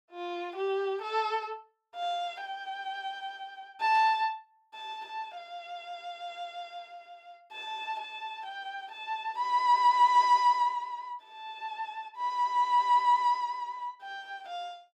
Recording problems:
burst of static; at 4 s; peak -15 dB vs average level

